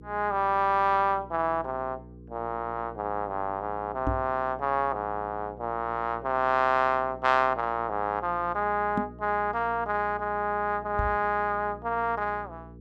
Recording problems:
electrical hum; 60 Hz, harmonics up to 480 Hz, SNR 19 dB
microphone thump; at 4 s, at 9 s and at 11 s; peak +1 dB vs average level

